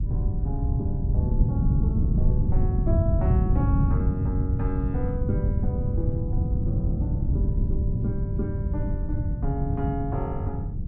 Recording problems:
low-frequency rumble; below 100 Hz, SNR -3 dB
wind noise; below 150 Hz, SNR -7 dB

